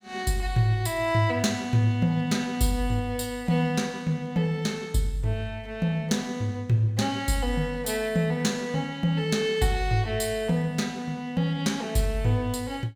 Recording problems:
none

